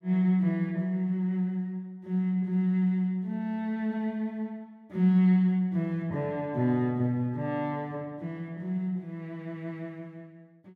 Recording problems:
none

